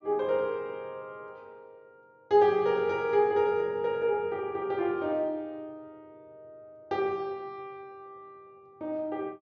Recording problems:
treble missing; nothing above 7.1 kHz

